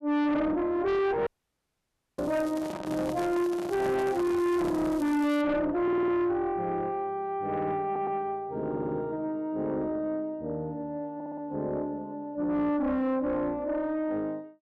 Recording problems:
distortion; soft clipping, signal-to-distortion ratio 6 dB
dropout; at 1.5 s for 1 s
crackle; at 2 s and from 3 to 5.5 s; loose cable, SNR 22 dB
microphone handling noise; from 2.5 to 5 s; peak -3 dB vs average level
stutter; 4 times, first at 6 s

